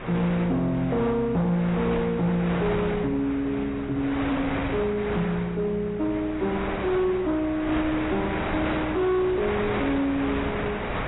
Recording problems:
lossy codec; AAC, log-spectral distance 2 dB, nothing above 3.8 kHz
distorted audio; hard clipping, signal-to-distortion ratio 11 dB
hum; 60 Hz, harmonics up to 420 Hz, SNR 16 dB
wind noise; below 1.7 kHz, SNR 7 dB

